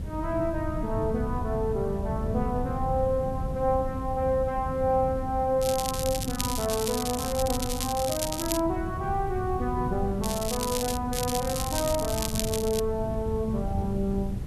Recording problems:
background hiss; slope -1 dB per octave, SNR 27 dB
wind noise; below 150 Hz, SNR 6 dB
crackling; from 5.5 to 8.5 s, at 10 s and from 11 to 13 s; loose cable, SNR 4 dB

